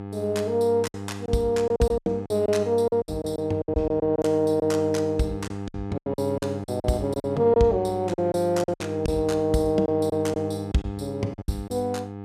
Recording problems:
hum; 50 Hz, harmonics up to 1.3 kHz, SNR 10 dB
lost packets; 12% of the sound replaced, filled with silence

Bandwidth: 14.5 kHz